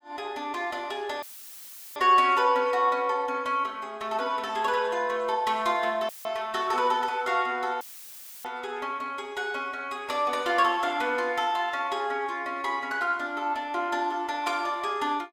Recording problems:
audio cutting out; at 1 s for 0.5 s, at 6 s and at 8 s for 0.5 s; filled with static

